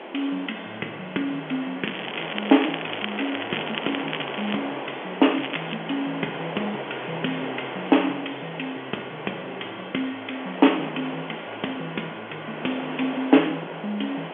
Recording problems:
telephone audio; 220 Hz to 3.4 kHz, G.711
background hiss; SNR 7 dB
crackle; from 2 to 4.5 s and at 5.5 s; loose cable, SNR 6 dB

